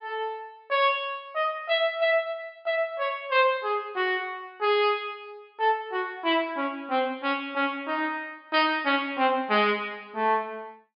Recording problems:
low-pass filter; nothing above 5.5 kHz

